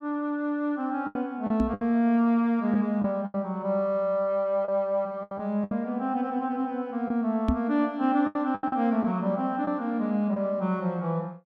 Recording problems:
lost packets; 7% of the sound replaced, filled with the last packet
microphone thump; at 1.5 s and at 7.5 s; peak +5 dB vs average level

